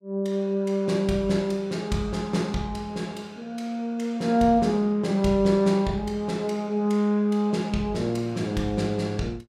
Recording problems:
none

